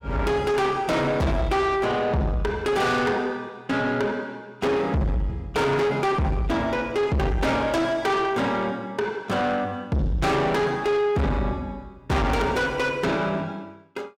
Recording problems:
distortion; soft clipping, signal-to-distortion ratio 6 dB

